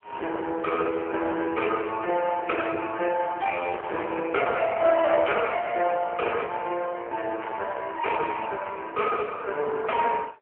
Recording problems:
telephone audio; 340 Hz to 2.3 kHz, AMR-NB
distortion; hard clipping, uneven, signal-to-distortion ratio 11 dB

